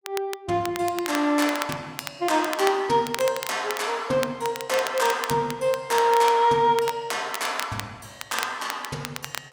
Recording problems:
crackle; vinyl, SNR 11 dB

